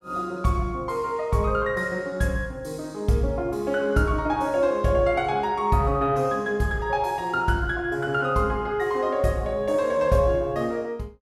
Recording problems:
none

